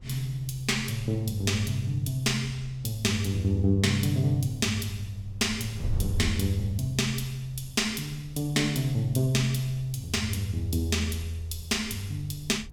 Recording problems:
wind on the microphone; below 96 Hz, SNR 16 dB

